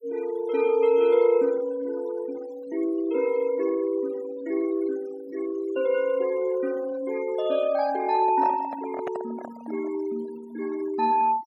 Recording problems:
noise reduction artefacts; signal-to-artefact ratio 20 dB
handling noise; from 8 to 10 s; peak -6 dB vs average level

